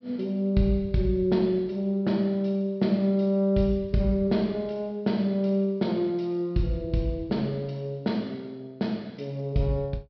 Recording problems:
treble cut off; nothing above 5.5 kHz

